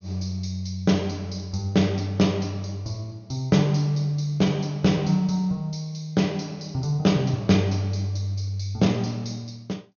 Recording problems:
treble missing; nothing above 6.7 kHz

